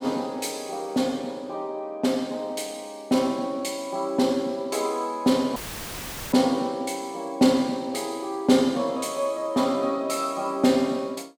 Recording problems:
audio cutting out; at 5.5 s for 1 s; filled with static

